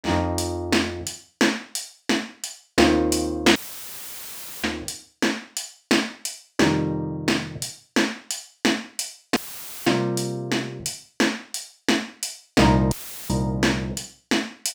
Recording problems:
audio cutting out; at 3.5 s for 1 s, at 9.5 s and at 13 s; filled with static

